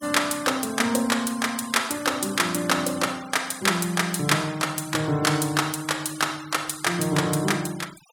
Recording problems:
noise reduction artefacts; signal-to-artefact ratio 19 dB

